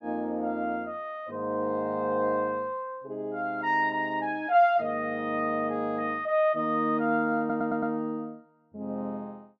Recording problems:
stutter; at 7.5 s

